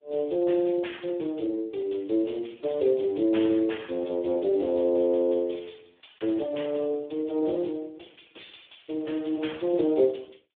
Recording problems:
phone line; 280 Hz to 3.6 kHz, Speex

